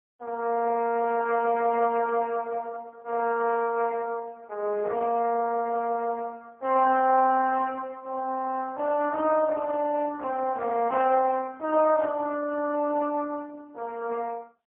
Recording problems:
phone line; 260 Hz to 2.5 kHz, AMR-NB, then MP3

